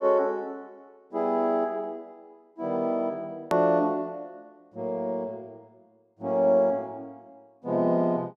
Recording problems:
edit click; at 3.5 s

